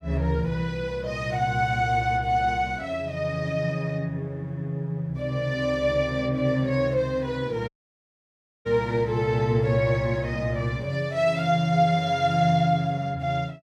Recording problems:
audio cutting out; at 7.5 s for 1 s

